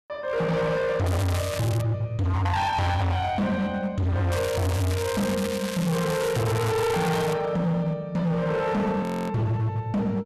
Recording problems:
distortion; hard clipping, signal-to-distortion ratio 7 dB
crackle; at 1 s and from 4.5 to 7.5 s; loose cable, SNR 9 dB
audio freezing; at 9 s

